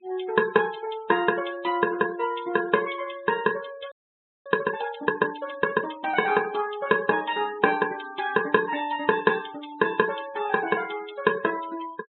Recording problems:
treble cut off; nothing above 4 kHz
denoising artefacts; signal-to-artefact ratio 19 dB
frozen audio; at 4 s for 0.5 s

